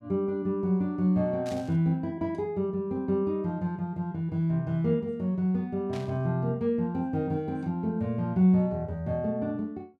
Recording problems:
static burst; at 1.5 s and at 6 s; peak -12 dB vs average level

